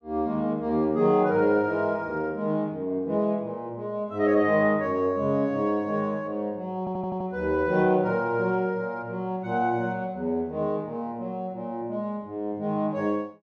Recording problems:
audio stuttering; at 7 s

